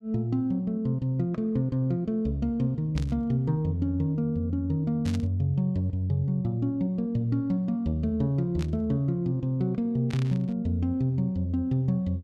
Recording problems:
static burst; 4 times, first at 3 s; peak -9 dB vs average level

